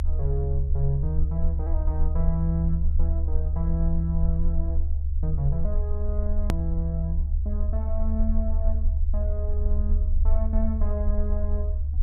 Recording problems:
low-frequency rumble; below 72 Hz, SNR -6 dB
click at an edit; at 6.5 s

